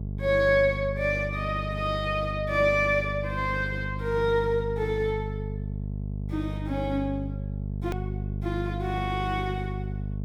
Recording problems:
electrical hum; 50 Hz, harmonics up to 450 Hz, SNR 6 dB
click at an edit; at 8 s

